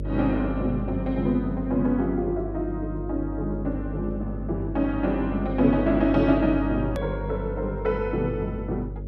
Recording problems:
mains hum; 50 Hz, harmonics up to 600 Hz, SNR 7 dB
hard cut with a click; at 7 s

